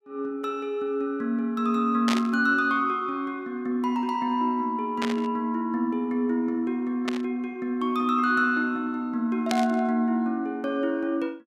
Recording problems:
burst of static; 4 times, first at 2 s; peak +1 dB vs average level

